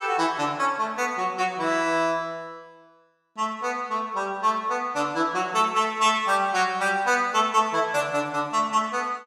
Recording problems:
none

